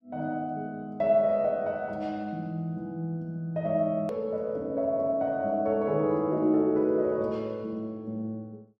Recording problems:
hard cut with a click; at 4 s

